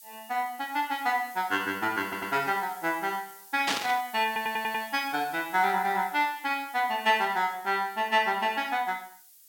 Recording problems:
background hiss; SNR 19 dB
audio stuttering; at 2 s and at 4.5 s
static burst; at 3.5 s; peak +4 dB vs average level

